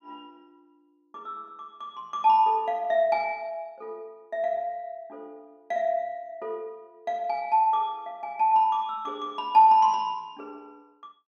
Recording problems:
none

